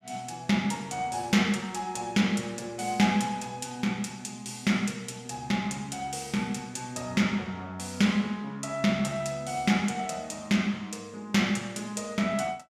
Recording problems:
none

